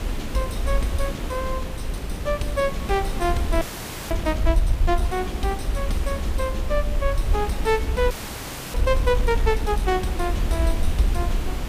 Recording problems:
background hiss; slope -5 dB per octave, SNR 7 dB
low-frequency rumble; below 62 Hz, SNR 1 dB
audio freezing; at 3.5 s for 0.5 s and at 8 s for 0.5 s

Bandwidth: 15 kHz